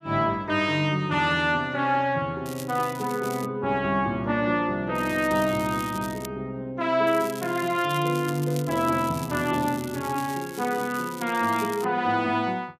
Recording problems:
crackle; from 2.5 to 3.5 s, from 5 to 6.5 s and from 7 to 12 s; loose cable, SNR 16 dB

